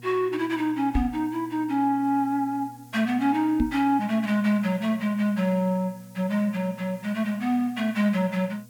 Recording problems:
mains hum; 60 Hz, harmonics up to 720 Hz, SNR 23 dB
background hiss; SNR 28 dB
microphone bump; at 1 s and at 3.5 s; peak +4 dB vs average level

